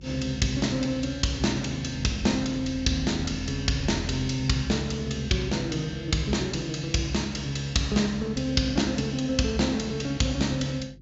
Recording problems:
low-pass filter; nothing above 7.3 kHz
lossy compression; MP2, log-spectral distance 3 dB
hum; 50 Hz, harmonics up to 400 Hz, SNR 21 dB

